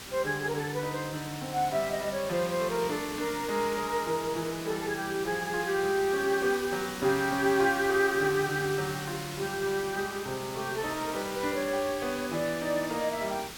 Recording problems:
background hiss; SNR 10 dB

